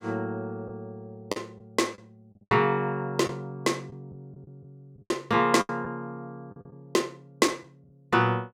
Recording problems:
lost packets; 7% of the sound replaced, filled with the last packet

